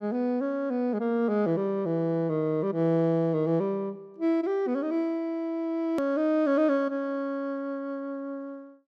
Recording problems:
edit click; at 6 s

